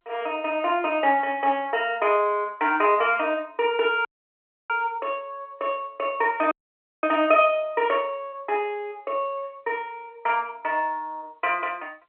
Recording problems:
telephone audio; 320 Hz to 3.2 kHz, G.711
dropout; at 4 s for 0.5 s and at 6.5 s for 0.5 s

